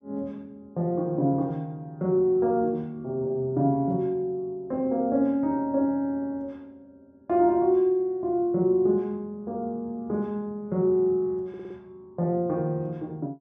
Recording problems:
audio stuttering; at 11 s

